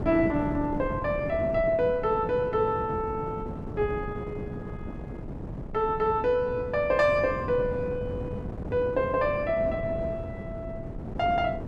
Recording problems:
wind noise; below 340 Hz, SNR 9 dB

